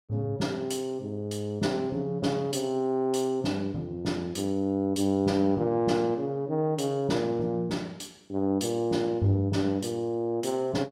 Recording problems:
none

